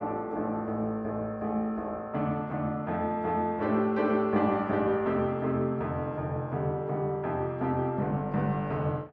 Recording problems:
none

